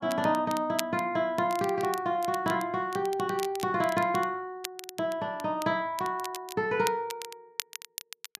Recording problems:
crackle; vinyl, SNR 13 dB

